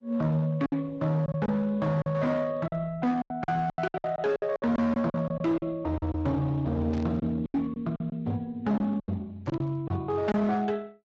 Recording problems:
codec artefacts; Speex, then Opus, log-spectral distance 2 dB
distortion; hard clipping, signal-to-distortion ratio 11 dB
lost packets; 11% of the sound replaced, filled with silence
burst of static; at 7 s and at 9.5 s; peak -14 dB vs average level

